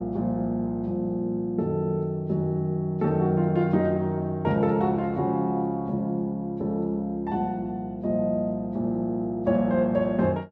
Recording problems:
none

